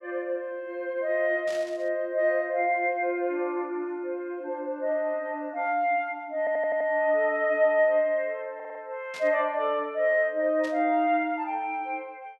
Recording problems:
burst of static; at 1.5 s, at 9 s and at 11 s; peak -11 dB vs average level
stutter; at 6.5 s and at 8.5 s

